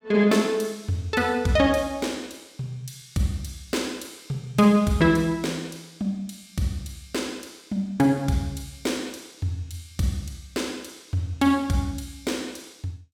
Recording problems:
none

